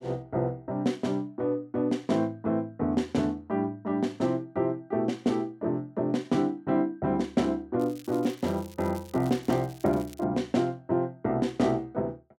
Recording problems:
crackling; from 8 to 10 s; loose cable, SNR 22 dB

